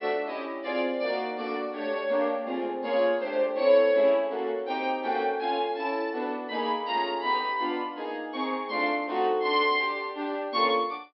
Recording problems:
treble cut off; nothing above 5.4 kHz

